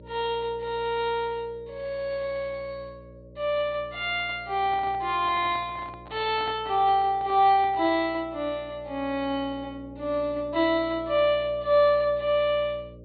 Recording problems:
treble cut off; nothing above 4.4 kHz
hum; 60 Hz, harmonics up to 600 Hz, SNR 21 dB
handling noise; from 4.5 to 8 s; peak -11 dB vs average level

